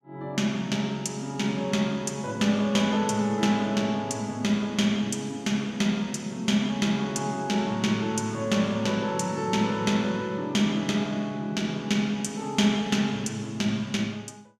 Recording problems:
none

